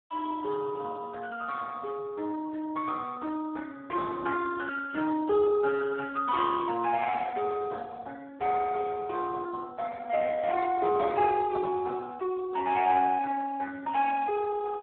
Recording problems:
telephone audio; 320 Hz to 2.1 kHz, Speex

